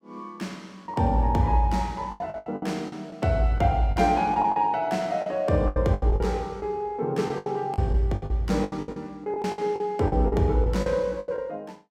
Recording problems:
lost packets; 14% of the sound replaced, filled with the last packet

